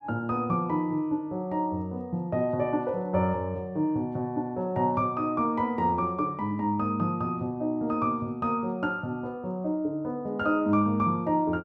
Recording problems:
none

